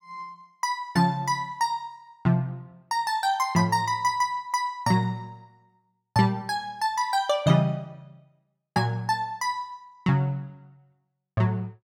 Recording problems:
none

